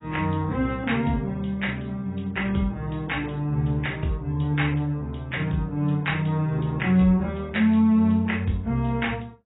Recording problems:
lossy compression; AAC, log-spectral distance 3 dB, nothing above 3.8 kHz

